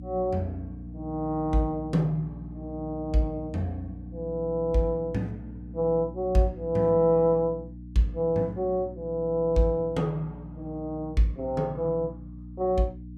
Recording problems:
hum; 60 Hz, harmonics up to 300 Hz, SNR 14 dB

